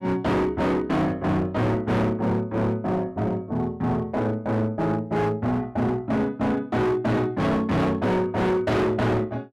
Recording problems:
distortion; hard clipping, signal-to-distortion ratio 7 dB

